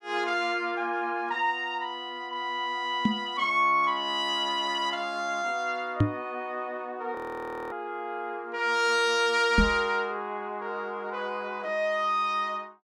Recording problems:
knock on the microphone; at 3 s, at 6 s and at 9.5 s; peak +8 dB vs average level
audio freezing; at 7 s for 0.5 s

